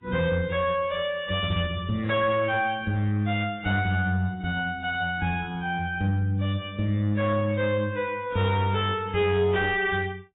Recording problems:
lossy codec; AAC, log-spectral distance 2 dB, nothing above 3.1 kHz
distortion; soft clipping, signal-to-distortion ratio 11 dB

